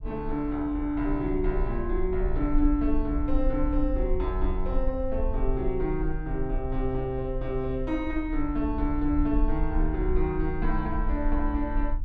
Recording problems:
low-frequency rumble; below 48 Hz, SNR 3 dB

